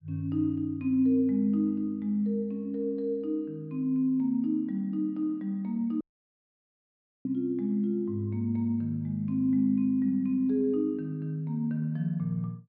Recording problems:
treble missing; nothing above 5.5 kHz
audio cutting out; at 6 s for 1 s

